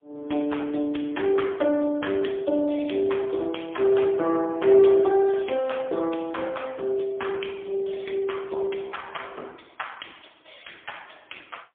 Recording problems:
telephone audio; 240 Hz to 3.4 kHz, AMR-NB, then MP3

